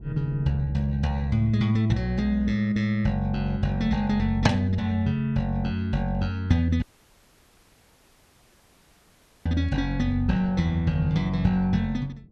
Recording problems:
wind noise; below 200 Hz, SNR 20 dB
dropout; at 7 s for 2.5 s

